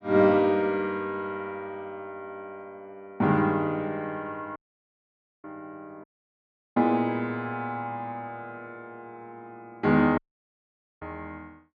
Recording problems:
dropout; at 4.5 s for 1 s, at 6 s for 0.5 s and at 10 s for 1 s

